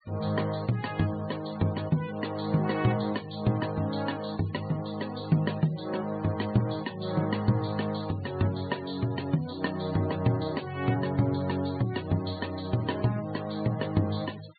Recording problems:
treble cut off; nothing above 4.5 kHz
denoising artefacts; signal-to-artefact ratio 20 dB

